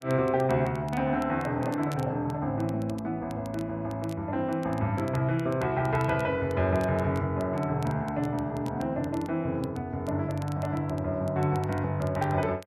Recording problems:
crackle; vinyl, SNR 24 dB

